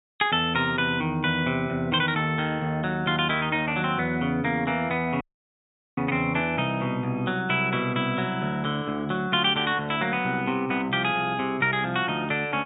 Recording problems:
low-pass filter; nothing above 4 kHz
dropout; at 5 s for 1 s

